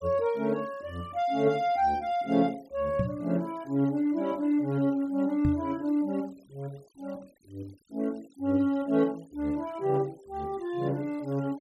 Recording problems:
noise reduction artefacts; signal-to-artefact ratio 27 dB
microphone bump; at 3 s and at 5.5 s; peak +3 dB vs average level

